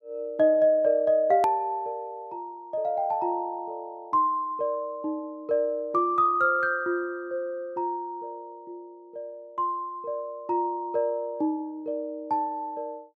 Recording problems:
hard cut with a click; at 1.5 s

